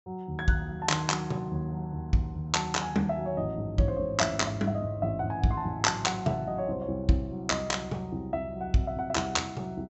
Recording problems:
treble missing; nothing above 7.7 kHz

